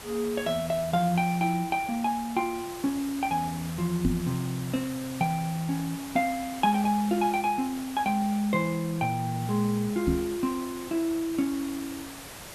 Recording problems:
background hiss; slope -2 dB per octave, SNR 13 dB
microphone bump; at 4 s and at 10 s; peak +6 dB vs average level

